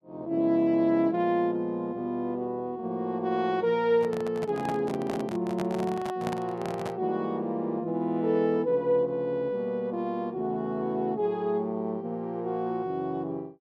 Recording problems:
microphone handling noise; from 4 to 7 s; peak -2 dB vs average level

